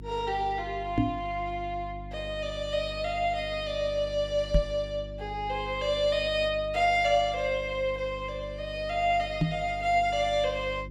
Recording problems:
hum; 50 Hz, harmonics up to 350 Hz, SNR 14 dB
microphone thump; at 1 s, at 4.5 s and at 9.5 s; peak +6 dB vs average level

